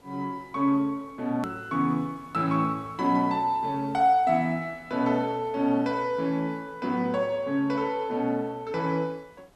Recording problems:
background hiss; slope -6 dB per octave, SNR 29 dB
hard cut with a click; at 1.5 s

